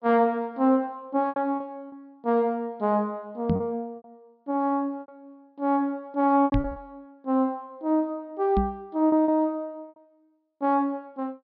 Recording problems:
low-pass filter; nothing above 5.5 kHz
lost packets; 6% of the sound replaced, filled with repeated pitch periods
knock on the microphone; at 3.5 s, at 6.5 s and at 8.5 s; peak +4 dB vs average level

